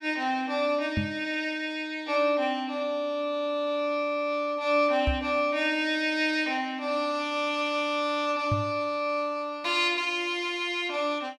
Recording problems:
microphone thump; at 1 s, at 5 s and at 8.5 s; peak +2 dB vs average level

